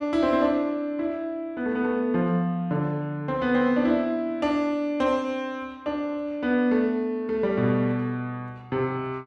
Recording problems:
none

